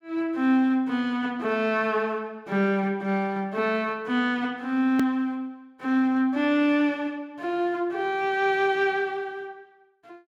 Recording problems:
edit click; at 5 s

